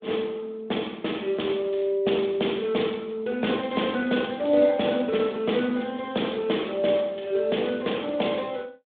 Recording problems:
phone line; 170 Hz to 3.7 kHz, Speex

